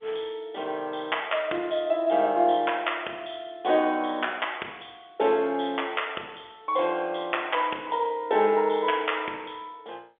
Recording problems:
phone line; 320 Hz to 3.5 kHz, G.711

